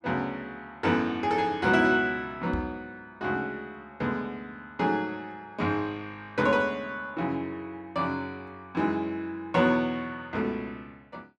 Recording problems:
knock on the microphone; at 2.5 s; peak -2 dB vs average level

